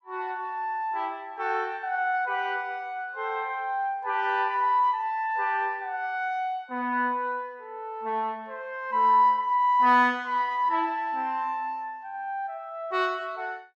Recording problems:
none

